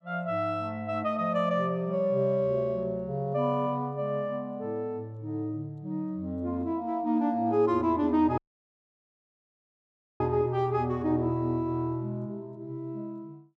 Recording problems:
audio cutting out; at 8.5 s for 2 s

